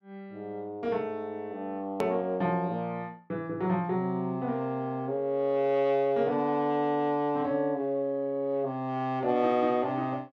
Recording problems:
hard cut with a click; at 2 s

